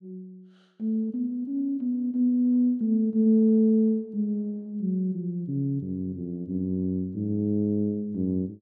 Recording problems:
none

